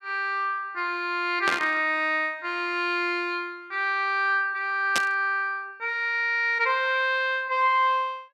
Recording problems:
static burst; at 1.5 s and at 5 s; peak +3 dB vs average level

